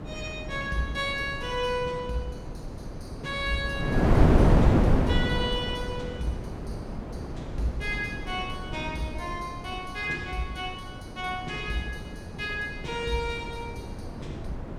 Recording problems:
wind noise; below 340 Hz, SNR -2 dB

